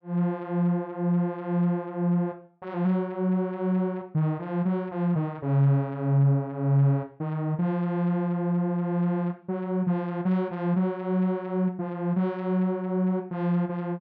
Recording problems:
none

